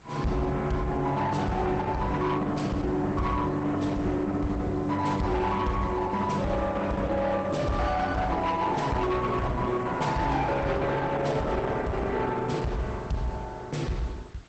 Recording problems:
lossy codec; Opus, log-spectral distance 3 dB, nothing above 8 kHz
distortion; soft clipping, signal-to-distortion ratio 10 dB
background hiss; slope -4 dB per octave, SNR 24 dB

